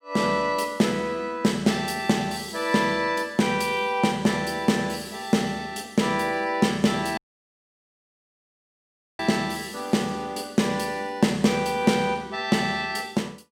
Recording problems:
audio cutting out; at 7 s for 2 s

